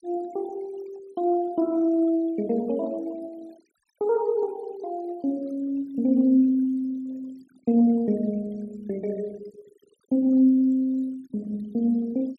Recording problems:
denoising artefacts; signal-to-artefact ratio 27 dB

